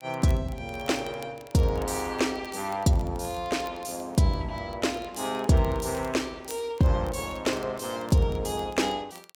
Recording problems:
crackling; vinyl, SNR 25 dB

